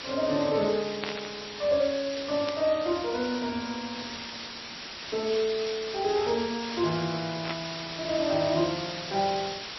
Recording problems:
lossy compression; MP3, log-spectral distance 20 dB, nothing above 4.9 kHz
hiss; slope 0 dB per octave, SNR 8 dB
burst of static; at 1 s, at 2.5 s and at 7.5 s; peak -1 dB vs average level

